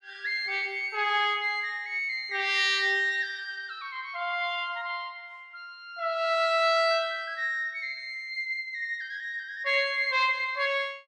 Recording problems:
none

